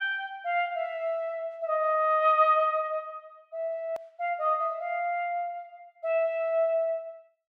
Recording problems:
click at an edit; at 4 s

